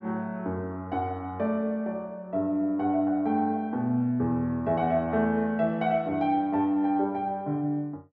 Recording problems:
none

